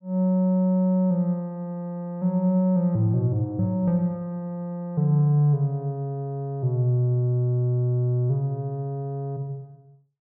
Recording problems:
none

